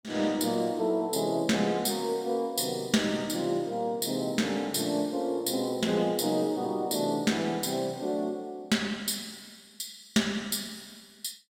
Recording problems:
none

